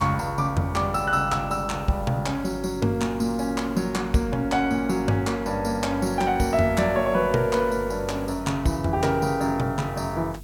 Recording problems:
hum; 50 Hz, harmonics up to 450 Hz, SNR 17 dB
background hiss; SNR 28 dB

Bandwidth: 17 kHz